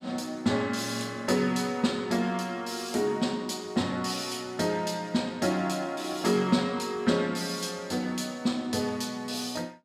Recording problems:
none

